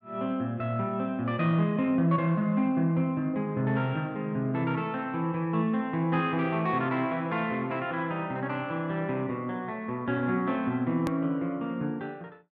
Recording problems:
edit click; at 11 s

